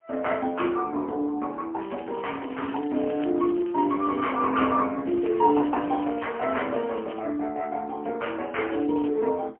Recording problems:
telephone audio; 220 Hz to 3.2 kHz, AMR-NB, then MP3
crackling; from 2 to 4.5 s, from 5 to 7 s and at 8.5 s; loose cable, SNR 23 dB

